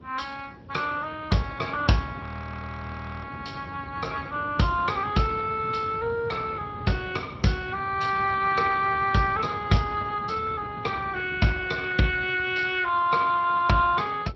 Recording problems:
lossy compression; MP2, then Speex, log-spectral distance 4 dB
low-frequency rumble; below 310 Hz, SNR 15 dB
frozen audio; at 2 s for 1 s

